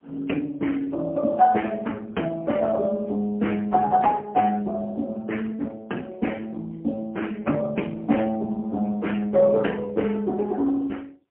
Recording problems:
telephone audio; 170 Hz to 3.2 kHz, AMR-NB, then MP3

